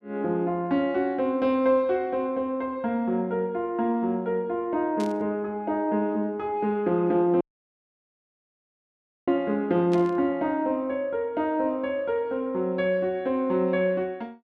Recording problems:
burst of static; at 5 s and at 10 s; peak -11 dB vs average level
dropout; at 7.5 s for 2 s

